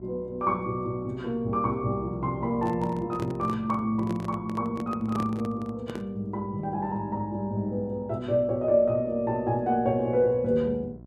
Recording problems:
hum; 60 Hz, harmonics up to 960 Hz, SNR 21 dB
microphone handling noise; from 2.5 to 6 s; peak -3 dB vs average level

